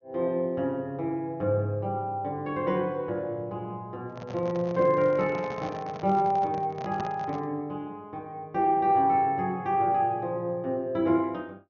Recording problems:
treble missing; nothing above 6.7 kHz
microphone handling noise; from 4 to 7.5 s; peak -5 dB vs average level

